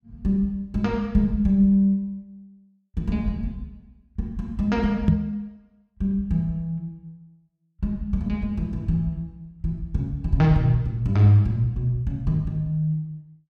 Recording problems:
microphone bump; at 5 s; peak +9 dB vs average level

